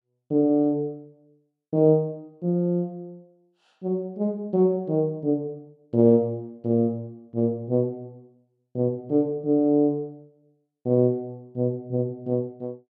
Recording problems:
none

